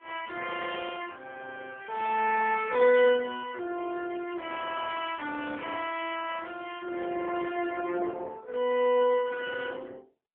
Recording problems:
telephone audio; 240 Hz to 3.4 kHz, AMR-NB

